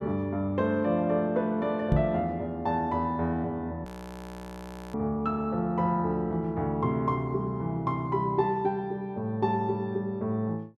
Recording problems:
knock on the microphone; at 2 s; peak +8 dB vs average level
frozen audio; at 4 s for 1 s

